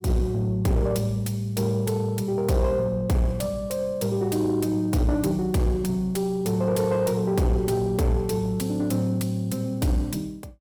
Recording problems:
distorted audio; soft clipping, signal-to-distortion ratio 10 dB

